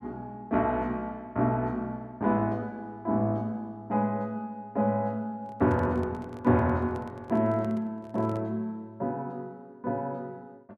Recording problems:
microphone handling noise; from 5.5 to 8.5 s; peak -11 dB vs average level

